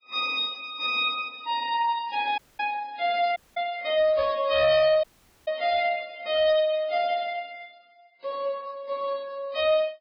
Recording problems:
lossy codec; Vorbis, then MP3, log-spectral distance 3 dB, nothing above 5 kHz
distorted audio; hard clipping, uneven, signal-to-distortion ratio 11 dB
dropout; at 2.5 s, at 3.5 s and at 5 s

